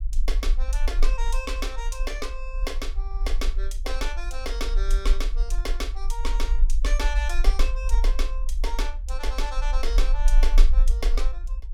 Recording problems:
low-frequency rumble; below 40 Hz, strongest tone 22 Hz, SNR -7 dB

